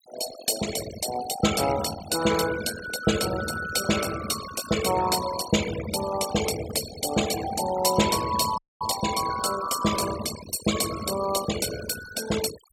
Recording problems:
denoising artefacts; signal-to-artefact ratio 9 dB
dropout; at 8.5 s

